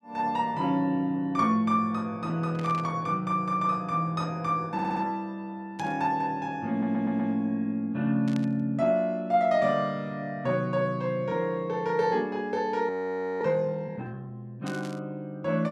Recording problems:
burst of static; 4 times, first at 2.5 s; peak -10 dB vs average level
stutter; at 4.5 s and at 6.5 s
audio freezing; at 13 s for 0.5 s

